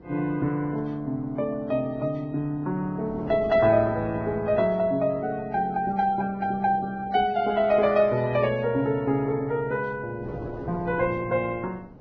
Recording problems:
lossy codec; Vorbis, log-spectral distance 2 dB, nothing above 5.8 kHz
wind on the microphone; below 470 Hz, SNR 19 dB

